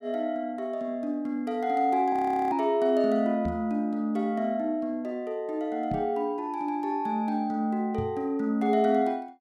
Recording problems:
audio freezing; at 2 s
microphone thump; at 3.5 s, at 6 s and at 8 s; peak -2 dB vs average level

